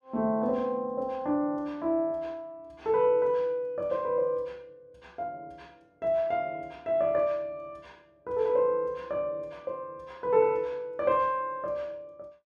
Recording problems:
none

